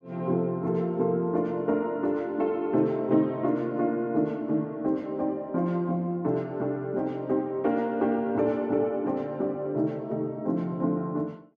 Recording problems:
none

